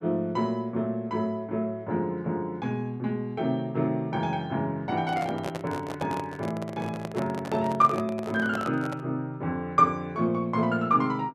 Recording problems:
microphone handling noise; from 5 to 9 s; peak -2 dB vs average level

